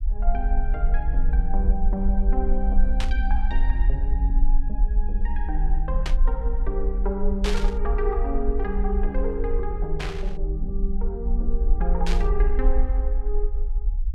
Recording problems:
rumble; below 44 Hz, strongest tone 22 Hz, SNR -5 dB
burst of static; 5 times, first at 3 s; peak +4 dB vs average level

